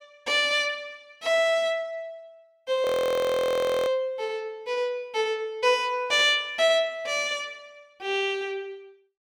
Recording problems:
frozen audio; at 3 s for 1 s

